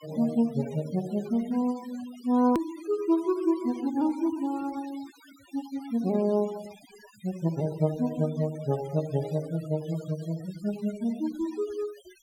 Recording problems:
denoising artefacts; signal-to-artefact ratio 20 dB
click at an edit; at 2.5 s

